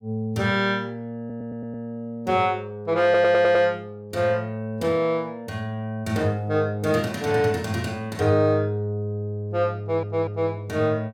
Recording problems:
stutter; at 1 s, at 3 s and at 10 s

